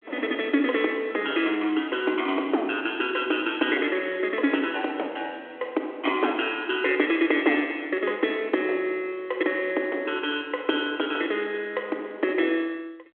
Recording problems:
phone line; 260 Hz to 3.3 kHz, G.726

